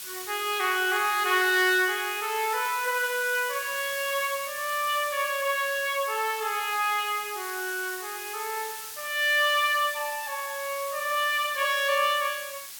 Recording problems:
background hiss; slope +4 dB per octave, SNR 10 dB

